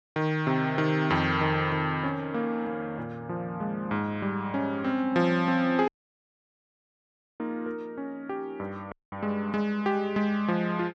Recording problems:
dropout; at 6 s for 1.5 s and at 9 s

